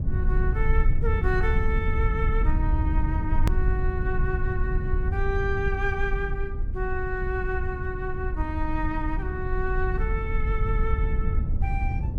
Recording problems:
rumble; below 78 Hz, SNR -3 dB
click at an edit; at 3.5 s

